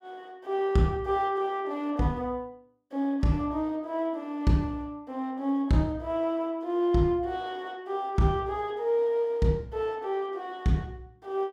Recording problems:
none

